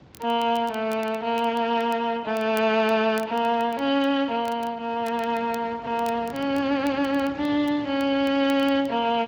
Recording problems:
lossy compression; Speex, log-spectral distance 3 dB
wind noise; below 740 Hz, SNR 21 dB
crackle; vinyl, SNR 25 dB

